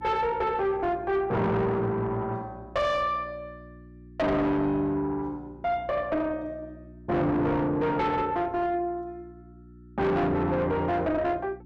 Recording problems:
distortion; soft clipping, signal-to-distortion ratio 6 dB
hum; 60 Hz, harmonics up to 360 Hz, SNR 21 dB

